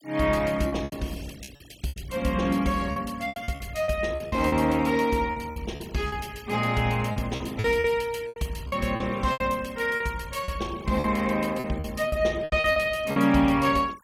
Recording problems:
denoising artefacts; signal-to-artefact ratio 22 dB
lost packets; 12% of the sound replaced, filled with repeated pitch periods

